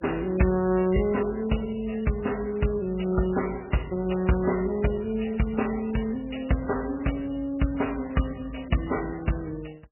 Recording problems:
lossy codec; MP3, log-spectral distance 5 dB, nothing above 2.9 kHz

